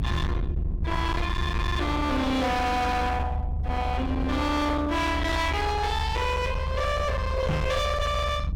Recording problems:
distorted audio; hard clipping, uneven, signal-to-distortion ratio 7 dB
low-frequency rumble; below 160 Hz, SNR 3 dB
microphone thump; at 7.5 s; peak +3 dB vs average level

